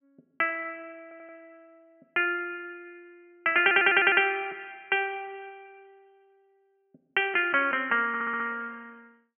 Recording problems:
low-pass filter; nothing above 3.2 kHz
audio stuttering; at 1 s, at 3.5 s and at 8 s

